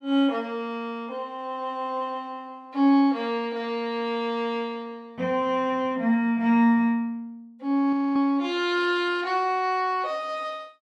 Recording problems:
frozen audio; at 8 s

